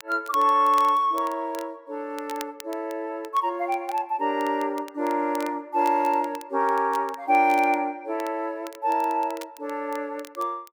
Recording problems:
crackle; vinyl, SNR 21 dB

